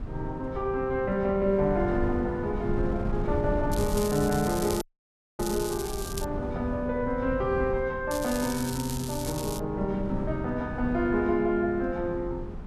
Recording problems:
wind on the microphone; below 180 Hz, SNR 8 dB
crackling; from 3.5 to 6.5 s and from 8 to 9.5 s; loose cable, SNR 10 dB
dropout; at 5 s for 0.5 s

